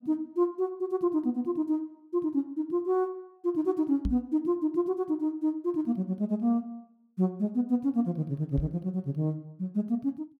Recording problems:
microphone thump; at 4 s and at 8.5 s; peak +2 dB vs average level

